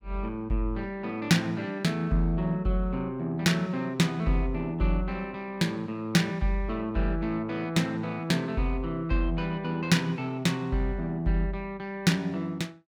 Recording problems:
none

